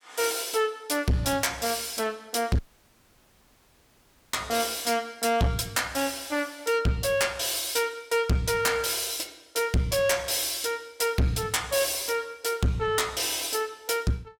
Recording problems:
distortion; soft clipping, signal-to-distortion ratio 6 dB
audio cutting out; at 2.5 s for 1.5 s

